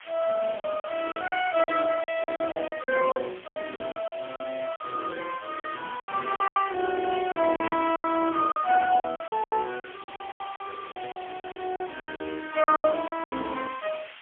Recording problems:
phone line; 280 Hz to 3.3 kHz, AMR-NB, then MP3
background hiss; SNR 17 dB
lost packets; 16% of the sound replaced, filled with silence
static burst; at 11 s; peak -13 dB vs average level

